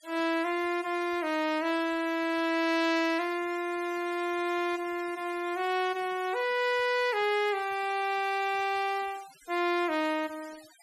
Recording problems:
denoising artefacts; signal-to-artefact ratio 20 dB

